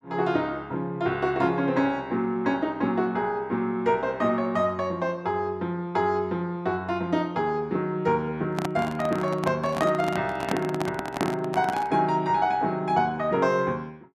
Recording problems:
microphone handling noise; from 8.5 to 12 s; peak +2 dB vs average level

